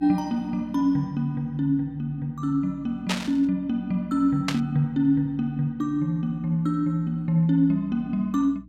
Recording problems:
electrical hum; 60 Hz, harmonics up to 300 Hz, SNR 25 dB
static burst; at 3 s and at 4.5 s; peak +2 dB vs average level

